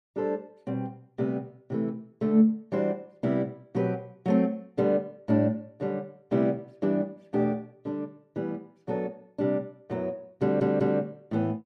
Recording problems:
stutter; at 10 s

